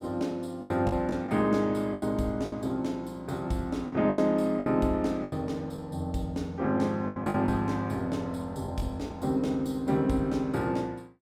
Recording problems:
lost packets; 7% of the sound replaced, filled with the last packet

